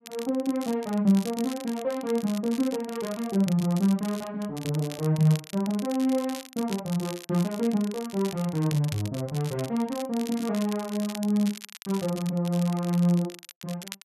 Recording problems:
crackling; vinyl, SNR 15 dB

